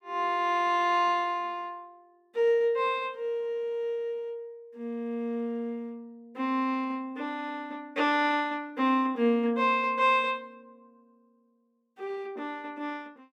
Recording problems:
none

